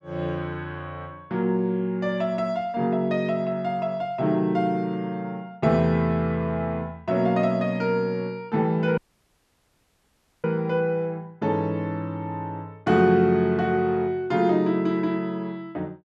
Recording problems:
dropout; at 9 s for 1.5 s

